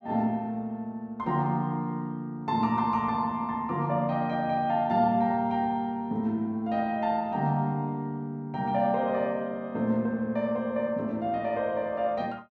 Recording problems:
none

